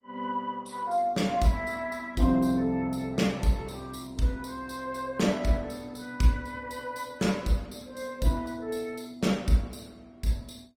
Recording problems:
lossy codec; Opus, then Opus, log-spectral distance 3 dB, nothing above 19.5 kHz

